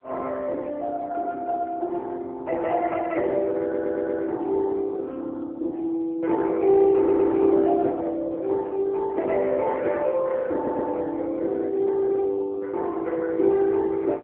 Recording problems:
phone line; 260 Hz to 2.7 kHz, AMR-NB
stutter; at 3.5 s, at 7 s and at 11 s

